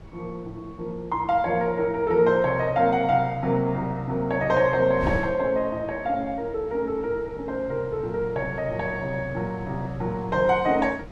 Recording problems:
wind on the microphone; below 310 Hz, SNR 17 dB

